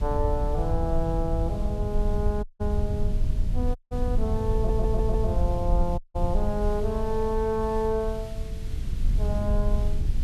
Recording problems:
background hiss; SNR 21 dB
low-frequency rumble; below 74 Hz, SNR -1 dB
audio cutting out; at 2.5 s, at 4 s and at 6 s
audio stuttering; at 4.5 s

